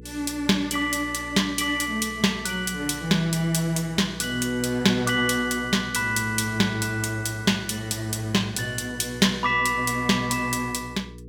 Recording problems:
electrical hum; 60 Hz, harmonics up to 480 Hz, SNR 19 dB

